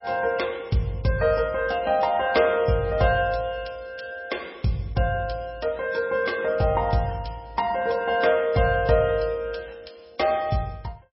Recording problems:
lossy codec; MP3, log-spectral distance 4 dB, nothing above 5.5 kHz

